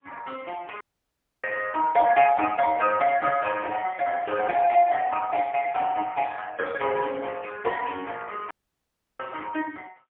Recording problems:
telephone audio; 220 Hz to 3.3 kHz, AMR-NB, then MP3
dropout; at 1 s for 0.5 s and at 8.5 s for 0.5 s

